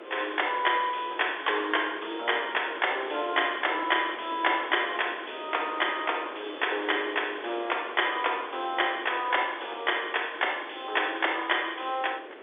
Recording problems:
phone line; 300 Hz to 3.6 kHz, G.711
hiss; SNR 14 dB

